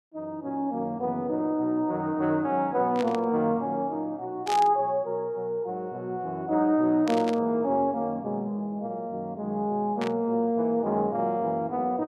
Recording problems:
static burst; 4 times, first at 3 s; peak -4 dB vs average level

